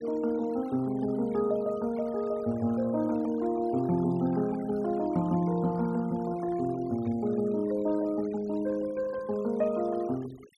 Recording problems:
denoising artefacts; signal-to-artefact ratio 22 dB

